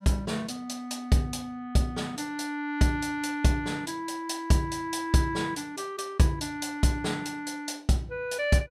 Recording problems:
none

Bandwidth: 15 kHz